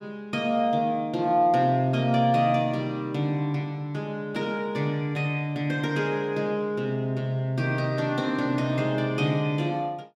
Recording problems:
none

